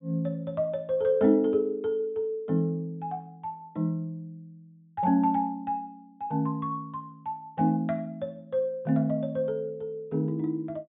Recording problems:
treble missing; nothing above 3.7 kHz

